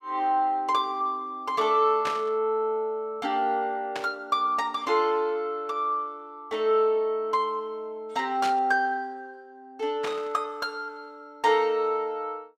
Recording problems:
burst of static; 4 times, first at 2 s; peak -3 dB vs average level

